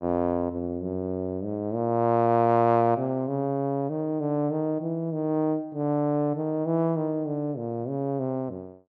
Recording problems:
none

